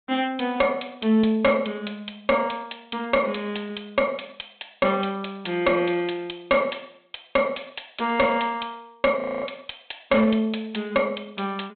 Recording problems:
treble cut off; nothing above 4 kHz
distorted audio; hard clipping, signal-to-distortion ratio 7 dB
frozen audio; at 9 s

